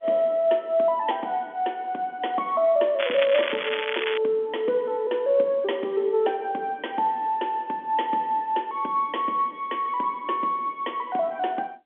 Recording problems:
phone line; 240 Hz to 3.5 kHz, G.711
crackle; from 3 to 4 s; loose cable, SNR 5 dB

